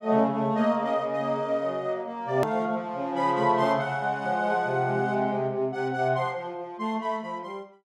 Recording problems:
hard cut with a click; at 2.5 s

